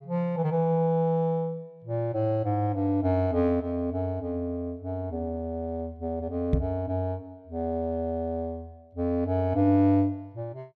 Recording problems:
microphone bump; at 6.5 s; peak +7 dB vs average level

